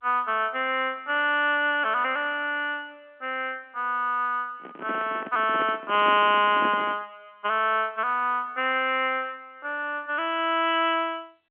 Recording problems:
phone line; 240 Hz to 3.3 kHz, G.711
handling noise; from 4.5 to 7 s; peak -4 dB vs average level

